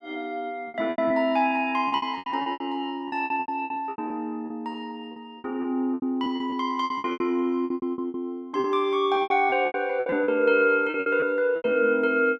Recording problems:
lost packets; 18% of the sound replaced, filled with repeated pitch periods

